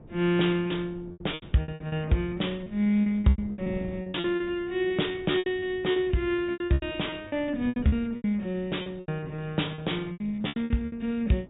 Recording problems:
low-pass filter; nothing above 4 kHz
wind noise; below 290 Hz, SNR 20 dB
lost packets; 18% of the sound replaced, filled with repeated pitch periods

